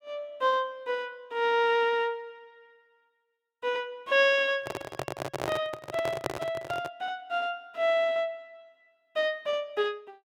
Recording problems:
microphone handling noise; from 4.5 to 7 s; peak +2 dB vs average level

